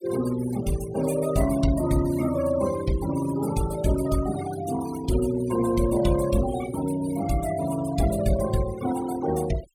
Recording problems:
noise reduction artefacts; signal-to-artefact ratio 13 dB

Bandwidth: 17.5 kHz